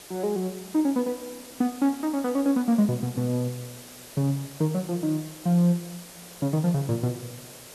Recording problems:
hiss; SNR 17 dB

